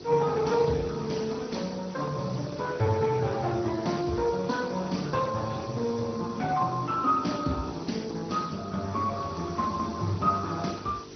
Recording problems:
treble cut off; nothing above 6 kHz
codec artefacts; Speex, log-spectral distance 11 dB
hum; 50 Hz, harmonics up to 600 Hz, SNR 17 dB
background hiss; slope -1 dB per octave, SNR 19 dB

